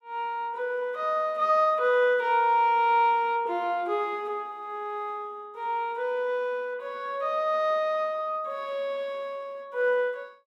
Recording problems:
none

